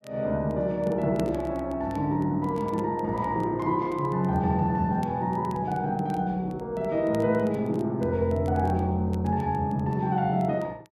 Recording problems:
crackle; vinyl, SNR 29 dB

